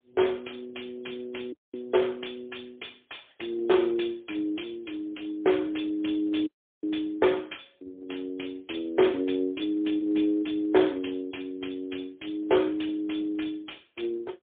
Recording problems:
telephone audio; 260 Hz to 3.5 kHz, AMR-NB, then MP3
dropout; at 1.5 s and at 6.5 s

